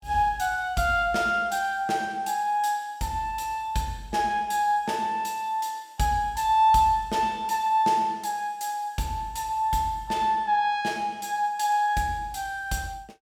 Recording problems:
none

